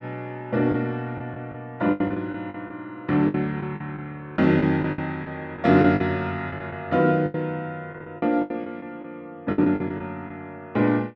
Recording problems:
lost packets; 11% of the sound replaced, filled with the last packet

